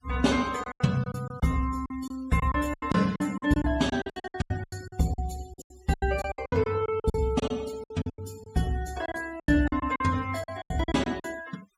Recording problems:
denoising artefacts; signal-to-artefact ratio 21 dB
lost packets; 18% of the sound replaced, filled with silence

